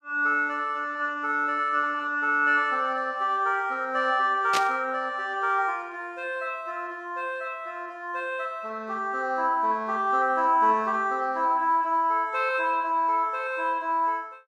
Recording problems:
static burst; at 4.5 s; peak +2 dB vs average level

